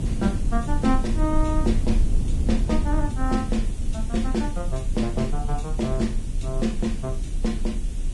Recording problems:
lossy compression; Vorbis, log-spectral distance 3 dB, nothing above 10.1 kHz
background hiss; SNR 18 dB
low-frequency rumble; below 66 Hz, strongest tone 28 Hz, SNR 0 dB

